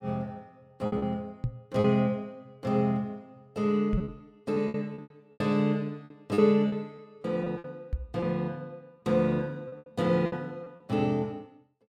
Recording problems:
packet loss; 10% of the sound replaced, filled with repeated pitch periods
knock on the microphone; at 1.5 s, at 4 s and at 8 s; peak +2 dB vs average level

